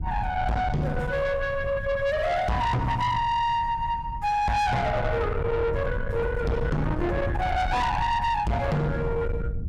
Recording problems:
distorted audio; soft clipping, signal-to-distortion ratio 7 dB
rumble; below 310 Hz, SNR 6 dB

